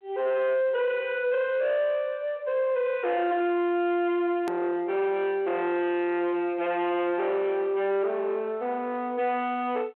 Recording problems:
telephone audio; 320 Hz to 3.4 kHz, G.726
distortion; soft clipping, signal-to-distortion ratio 8 dB
click at an edit; at 4.5 s

